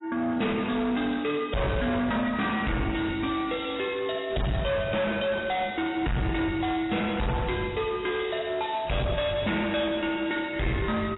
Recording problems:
lossy codec; AAC, log-spectral distance 8 dB, nothing above 3.8 kHz
distorted audio; hard clipping, uneven, signal-to-distortion ratio 6 dB

